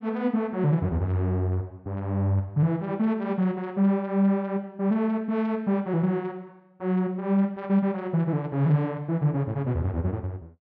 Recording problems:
none

